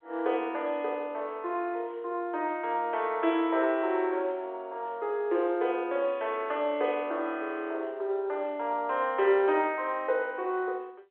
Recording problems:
phone line; 300 Hz to 3.7 kHz, G.711

